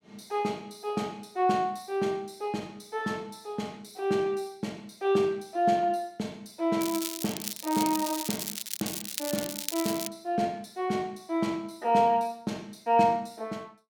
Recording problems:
crackle; from 7 to 10 s; loose cable, SNR 4 dB

